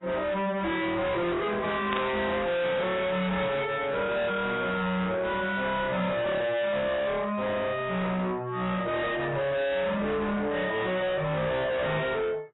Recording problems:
lossy codec; AAC, log-spectral distance 3 dB, nothing above 3.8 kHz
distorted audio; soft clipping, signal-to-distortion ratio 6 dB
burst of static; at 2 s; peak -1 dB vs average level

